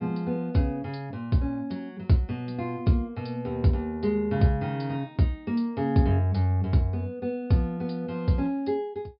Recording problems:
low-pass filter; nothing above 5.5 kHz

